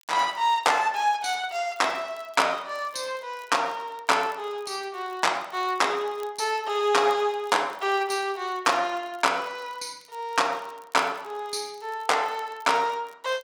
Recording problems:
crackling; vinyl, SNR 30 dB

